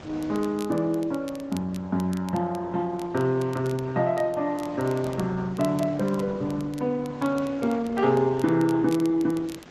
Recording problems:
lossy compression; G.722, then Opus, log-spectral distance 2 dB
wind on the microphone; below 1.4 kHz, SNR 22 dB
crackle; vinyl, SNR 23 dB

